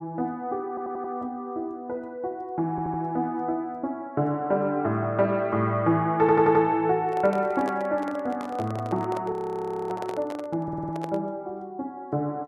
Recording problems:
audio stuttering; 4 times, first at 0.5 s
microphone handling noise; from 7 to 11 s; peak -4 dB vs average level
frozen audio; at 9.5 s for 0.5 s

